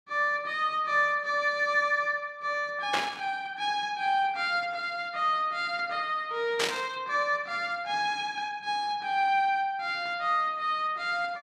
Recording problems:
burst of static; at 3 s and at 6.5 s; peak +4 dB vs average level

